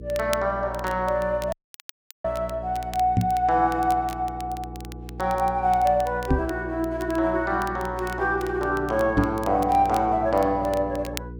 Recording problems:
electrical hum; 60 Hz, harmonics up to 480 Hz, SNR 14 dB
crackling; vinyl, SNR 20 dB
audio cutting out; at 1.5 s for 0.5 s
knock on the microphone; at 3 s, at 6.5 s and at 9 s; peak +7 dB vs average level

